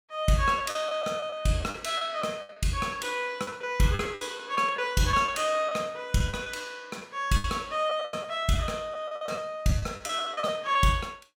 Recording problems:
packet loss; 11% of the sound replaced, filled with the last packet

